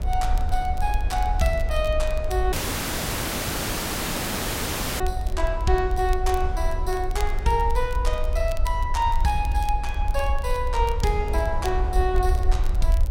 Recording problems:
rumble; below 60 Hz, SNR 1 dB
wind on the microphone; below 600 Hz, SNR 14 dB
crackle; vinyl, SNR 20 dB
dropout; at 2.5 s for 2.5 s

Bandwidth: 16 kHz